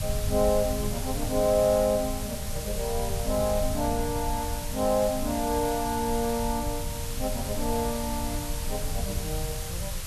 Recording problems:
hiss; slope +1 dB per octave, SNR 8 dB
low-frequency rumble; below 96 Hz, SNR 7 dB

